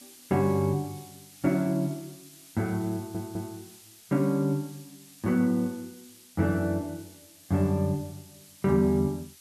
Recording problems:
hiss; SNR 22 dB
audio stuttering; at 3 s

